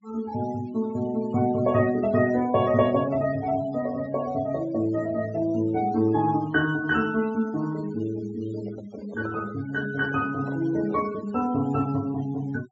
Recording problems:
low-pass filter; nothing above 8 kHz
noise reduction artefacts; signal-to-artefact ratio 20 dB
handling noise; from 8.5 to 11 s; peak -10 dB vs average level

